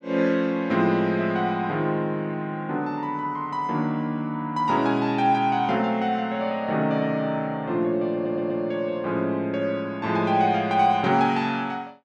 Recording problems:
audio stuttering; at 8 s

